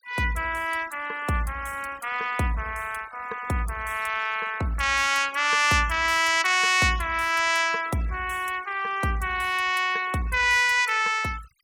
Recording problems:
denoising artefacts; signal-to-artefact ratio 22 dB

